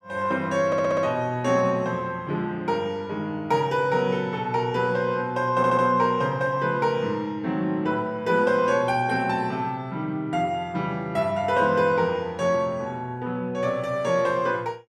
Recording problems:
stutter; at 0.5 s and at 5.5 s

